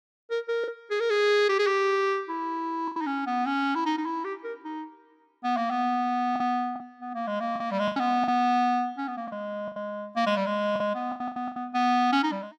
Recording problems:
lost packets; 7% of the sound replaced, filled with the last packet

